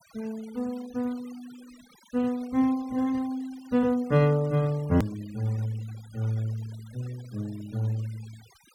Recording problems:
denoising artefacts; signal-to-artefact ratio 23 dB
edit click; at 5 s

